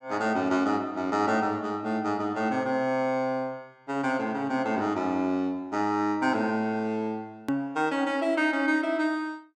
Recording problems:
hard cut with a click; at 7.5 s

